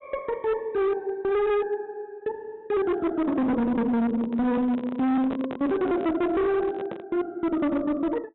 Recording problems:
low-pass filter; nothing above 3.9 kHz
distortion; hard clipping, uneven, signal-to-distortion ratio 8 dB
microphone handling noise; from 4 to 7 s; peak -5 dB vs average level

